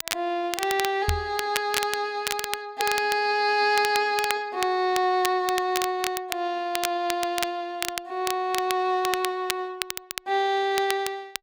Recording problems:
crackling; vinyl, SNR 7 dB
microphone thump; at 1 s; peak +2 dB vs average level

